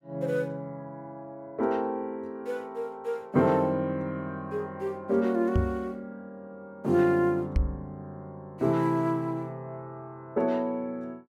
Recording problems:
microphone bump; at 5.5 s and at 7.5 s; peak +6 dB vs average level

